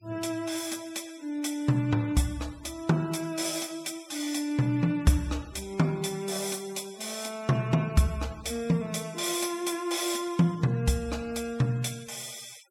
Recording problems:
denoising artefacts; signal-to-artefact ratio 22 dB

